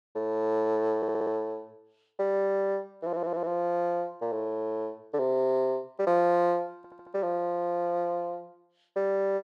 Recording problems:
audio stuttering; at 1 s, at 3 s and at 7 s

